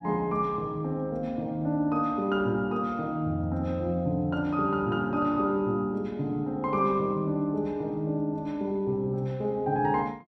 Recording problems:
none

